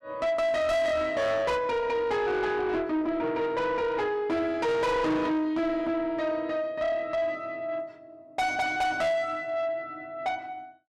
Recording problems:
distortion; soft clipping, signal-to-distortion ratio 8 dB

